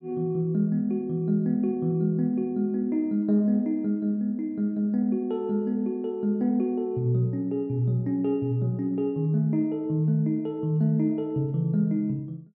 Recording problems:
none

